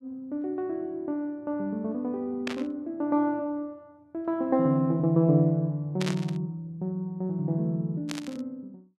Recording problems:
static burst; at 2.5 s, at 6 s and at 8 s; peak -2 dB vs average level

